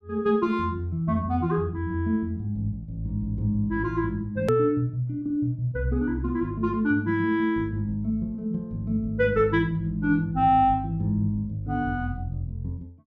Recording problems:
hard cut with a click; at 4.5 s

